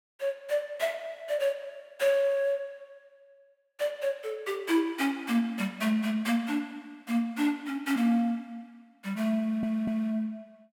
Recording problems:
stutter; at 9.5 s

